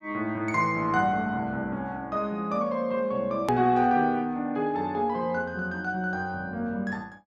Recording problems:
click at an edit; at 3.5 s

